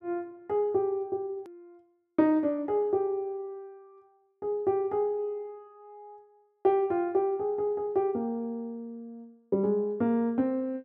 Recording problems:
click at an edit; at 1.5 s

